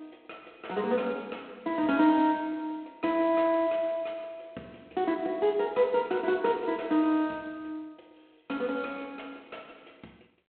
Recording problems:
telephone audio; 220 Hz to 3.6 kHz, G.726

